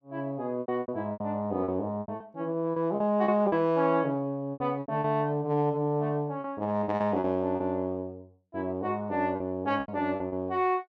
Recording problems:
lost packets; 11% of the sound replaced, filled with repeated pitch periods

